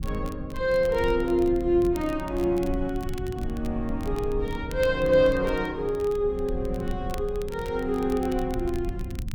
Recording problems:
rumble; below 98 Hz, SNR 10 dB
crackle; vinyl, SNR 22 dB

